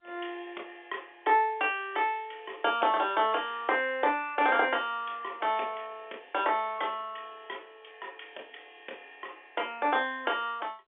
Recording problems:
phone line; 300 Hz to 3.6 kHz, G.711

